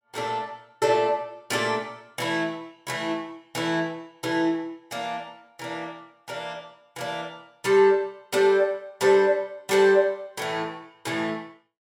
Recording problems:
none

